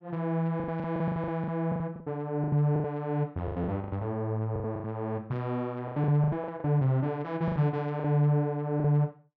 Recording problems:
lost packets; 15% of the sound replaced, filled with the last packet

